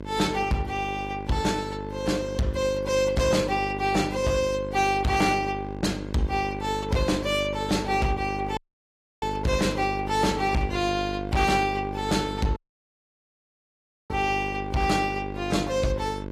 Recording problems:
codec artefacts; AAC, log-spectral distance 3 dB
distorted audio; hard clipping, uneven, signal-to-distortion ratio 10 dB
hum; 50 Hz, harmonics up to 1.6 kHz, SNR 9 dB
audio cutting out; at 8.5 s for 0.5 s and at 13 s for 1.5 s

